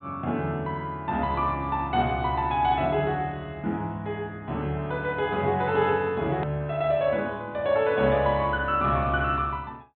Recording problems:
treble cut off; nothing above 4 kHz
hard cut with a click; at 6.5 s

